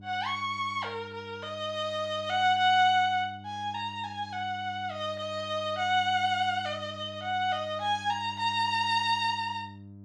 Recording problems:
hum; 50 Hz, harmonics up to 700 Hz, SNR 18 dB

